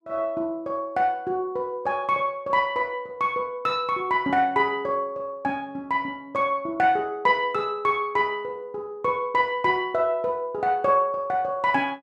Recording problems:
none

